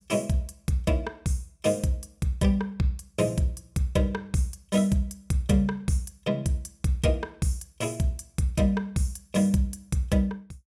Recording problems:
none

